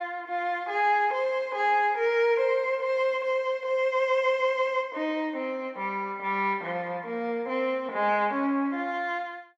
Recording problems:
none

